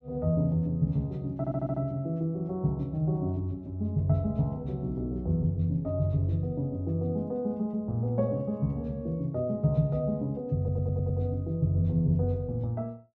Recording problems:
stutter; at 1.5 s and at 11 s

